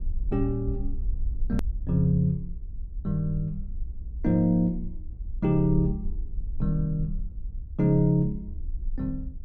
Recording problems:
rumble; below 54 Hz, SNR 10 dB
edit click; at 1.5 s

